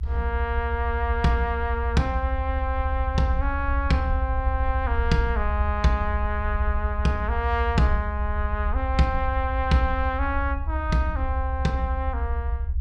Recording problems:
rumble; below 72 Hz, SNR 1 dB

